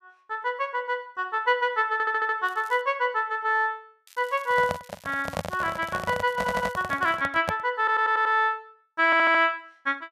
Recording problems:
audio stuttering; 4 times, first at 2 s
crackling; at 2.5 s and from 4 to 7 s; loose cable, SNR 27 dB
microphone handling noise; from 4.5 to 7.5 s; peak 0 dB vs average level

